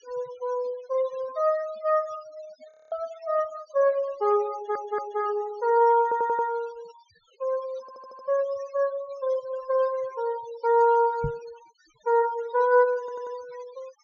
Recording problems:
treble missing; nothing above 6.6 kHz
noise reduction artefacts; signal-to-artefact ratio 22 dB
frozen audio; at 2.5 s
audio stuttering; 4 times, first at 4.5 s
microphone bump; at 11 s; peak -2 dB vs average level

